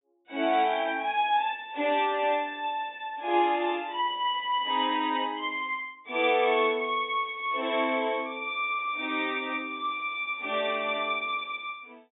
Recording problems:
treble cut off; nothing above 4 kHz

